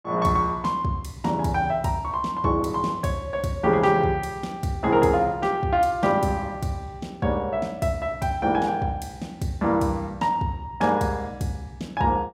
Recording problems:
none

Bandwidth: 16 kHz